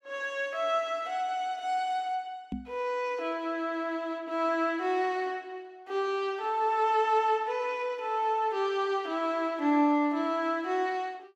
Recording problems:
microphone thump; at 2.5 s; peak -2 dB vs average level

